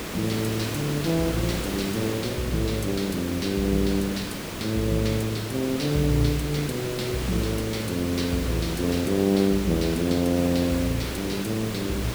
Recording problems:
hiss; SNR 6 dB

